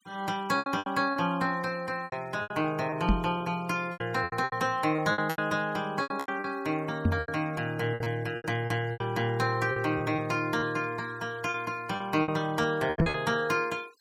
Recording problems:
noise reduction artefacts; signal-to-artefact ratio 23 dB
packet loss; 13% of the sound replaced, filled with repeated pitch periods
microphone bump; at 3 s, at 7 s and at 13 s; peak +8 dB vs average level

